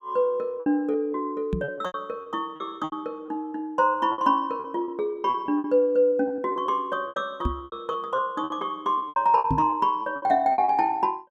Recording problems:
packet loss; 14% of the sound replaced, filled with repeated pitch periods
microphone bump; at 1.5 s, at 7.5 s and at 9.5 s; peak +3 dB vs average level

